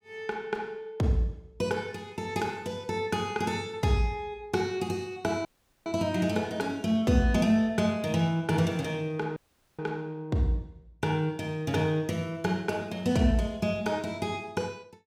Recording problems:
dropout; at 5.5 s and at 9.5 s

